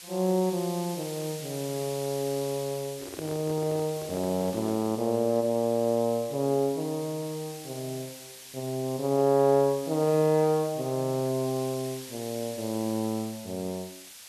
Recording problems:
hiss; slope +3 dB per octave, SNR 14 dB
microphone handling noise; from 3 to 5 s; peak -6 dB vs average level

